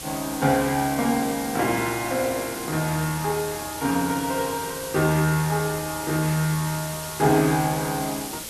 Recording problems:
hiss; SNR 9 dB

